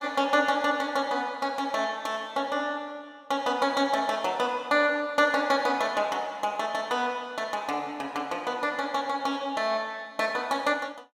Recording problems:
none

